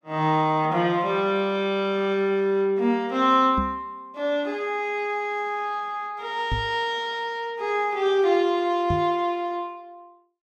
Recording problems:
microphone thump; at 3.5 s, at 6.5 s and at 9 s; peak 0 dB vs average level

